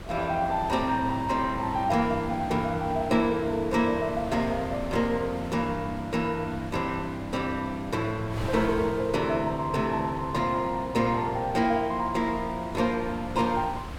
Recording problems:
wind on the microphone; below 820 Hz, SNR 13 dB

